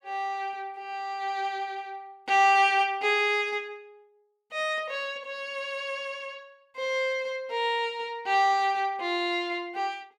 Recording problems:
none

